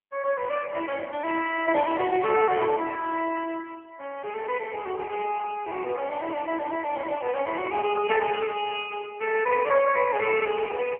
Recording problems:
telephone audio; 300 Hz to 3.2 kHz, AMR-NB

